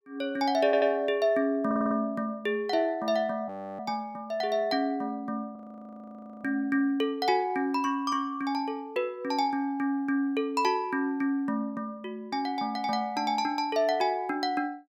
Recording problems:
stutter; at 0.5 s and at 1.5 s
audio freezing; at 3.5 s and at 5.5 s for 1 s

